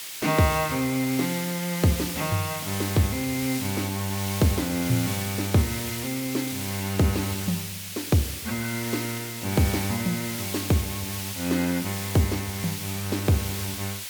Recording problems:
hiss; slope +3 dB per octave, SNR 6 dB

